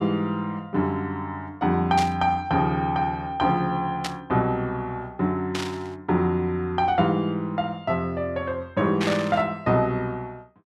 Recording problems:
burst of static; 4 times, first at 2 s; peak -1 dB vs average level

